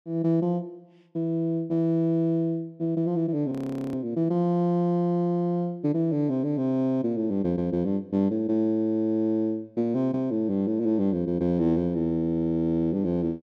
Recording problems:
frozen audio; at 3.5 s

